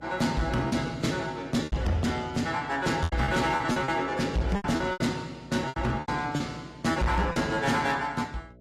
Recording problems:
lossy compression; AAC, log-spectral distance 3 dB
distorted audio; hard clipping, signal-to-distortion ratio 11 dB
hum; 60 Hz, harmonics up to 660 Hz, SNR 24 dB
packet loss; 10% of the sound replaced, filled with repeated pitch periods

